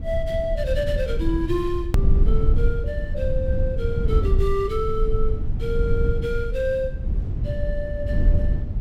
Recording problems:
low-frequency rumble; below 76 Hz, SNR -2 dB
click at an edit; at 2 s

